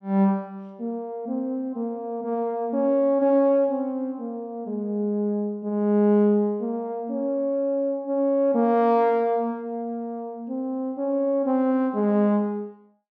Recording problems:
none

